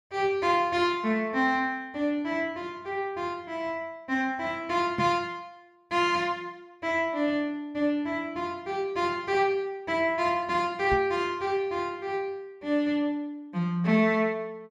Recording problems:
microphone thump; at 5 s and at 11 s; peak -1 dB vs average level

